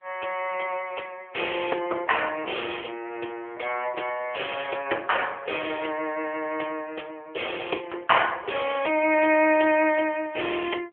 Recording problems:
telephone audio; 280 Hz to 3.4 kHz, AMR-NB

